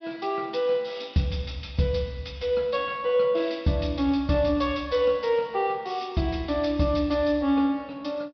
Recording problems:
treble cut off; nothing above 5.5 kHz

